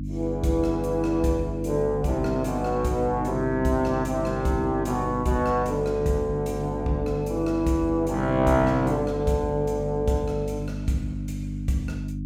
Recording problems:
electrical hum; 50 Hz, harmonics up to 300 Hz, SNR 7 dB

